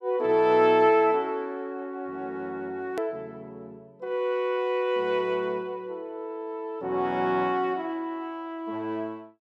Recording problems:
hard cut with a click; at 3 s

